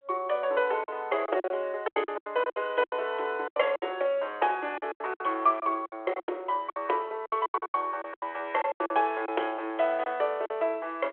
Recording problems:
telephone audio; 300 Hz to 3.3 kHz, G.726
lost packets; 15% of the sound replaced, filled with silence

